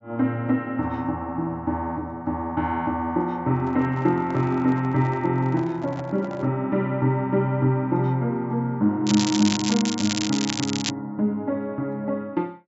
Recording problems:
treble cut off; nothing above 8 kHz
microphone handling noise; from 3.5 to 6.5 s; peak -10 dB vs average level
crackle; from 9 to 11 s; loose cable, SNR 4 dB

